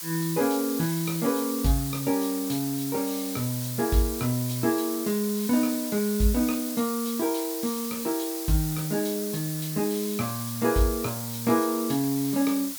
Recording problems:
background hiss; SNR 6 dB

